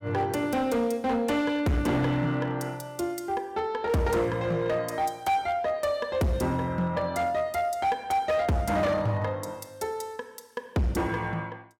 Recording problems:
distorted audio; hard clipping, signal-to-distortion ratio 10 dB

